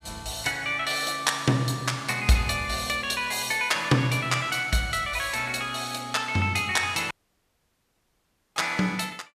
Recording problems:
audio cutting out; at 7 s for 1.5 s

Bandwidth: 14.5 kHz